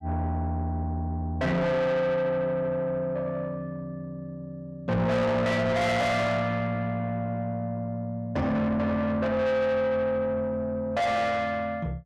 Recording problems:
distorted audio; soft clipping, signal-to-distortion ratio 6 dB

